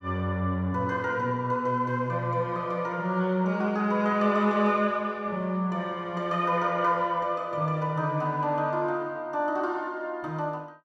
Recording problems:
none

